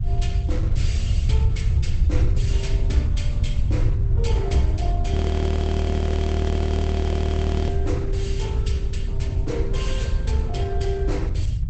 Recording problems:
lossy codec; Opus, log-spectral distance 2 dB, nothing above 8 kHz
rumble; below 100 Hz, SNR -6 dB
audio freezing; at 5 s for 2.5 s

